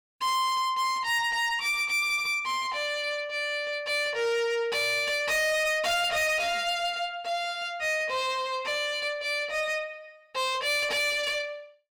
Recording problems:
distortion; soft clipping, signal-to-distortion ratio 7 dB

